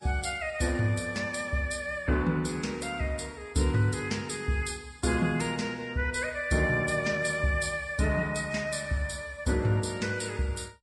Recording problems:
codec artefacts; MP3, then Vorbis, log-spectral distance 4 dB

